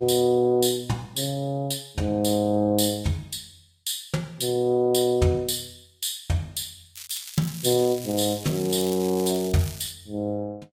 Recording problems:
lossy codec; Vorbis, log-spectral distance 5 dB, nothing above 15.1 kHz
crackle; from 7 to 10 s; loose cable, SNR 13 dB

